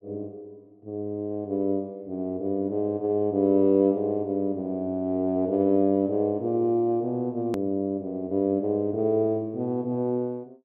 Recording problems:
hard cut with a click; at 7.5 s

